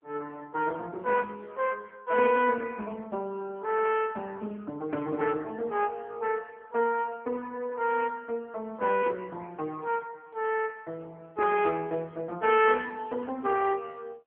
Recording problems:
telephone audio; 260 Hz to 2.9 kHz, AMR-NB

